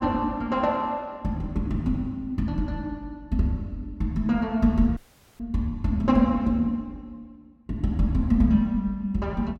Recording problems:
audio cutting out; at 5 s

